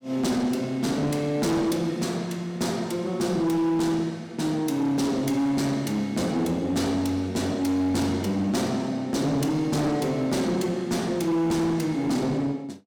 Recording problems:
distortion; hard clipping, signal-to-distortion ratio 11 dB

